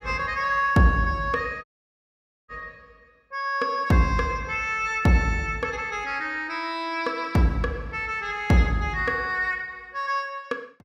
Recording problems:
dropout; at 1.5 s for 1 s

